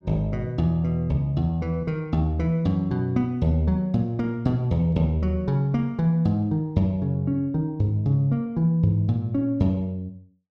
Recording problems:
none

